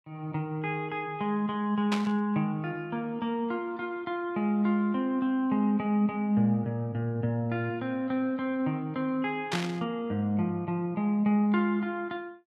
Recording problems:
static burst; at 2 s and at 9.5 s; peak +1 dB vs average level

